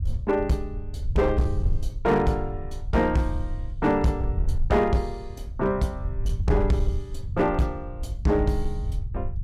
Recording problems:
distortion; hard clipping, signal-to-distortion ratio 12 dB
low-frequency rumble; below 84 Hz, SNR 7 dB

